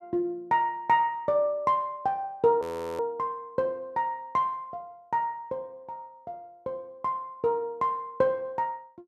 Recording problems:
audio freezing; at 2.5 s

